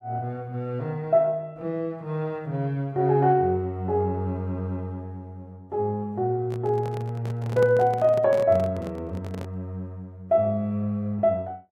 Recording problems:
microphone handling noise; from 6.5 to 9.5 s; peak -2 dB vs average level

